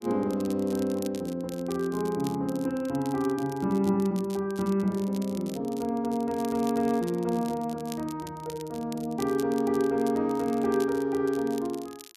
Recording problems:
crackle; vinyl, SNR 19 dB

